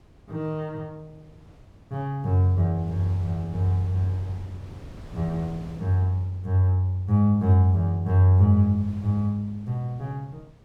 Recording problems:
wind on the microphone; below 270 Hz, SNR 21 dB

